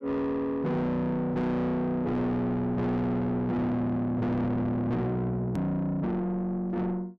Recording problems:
distorted audio; soft clipping, signal-to-distortion ratio 8 dB
edit click; at 5.5 s

